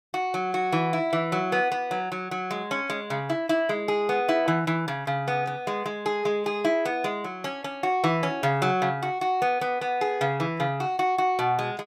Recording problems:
none

